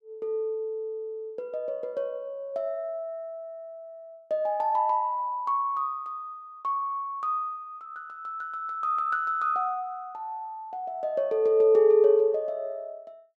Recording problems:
none

